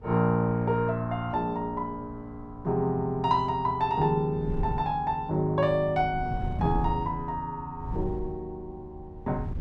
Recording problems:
wind noise; below 130 Hz, SNR 12 dB

